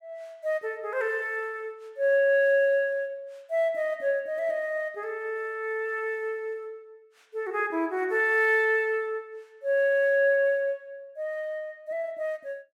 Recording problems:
none

